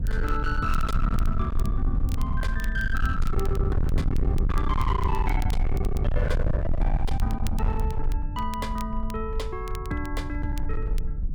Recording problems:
distorted audio; hard clipping, uneven, signal-to-distortion ratio 6 dB
rumble; below 80 Hz, strongest tone 20 Hz, SNR -3 dB
crackle; vinyl, SNR 17 dB

